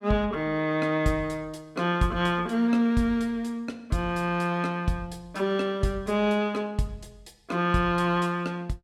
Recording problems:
none

